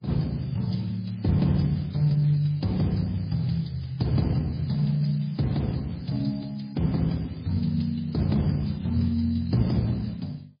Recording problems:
lossy compression; Speex, then MP3, log-spectral distance 5 dB, nothing above 11.3 kHz

